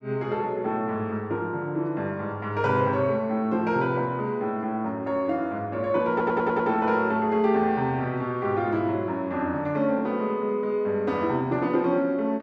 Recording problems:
audio stuttering; at 6 s

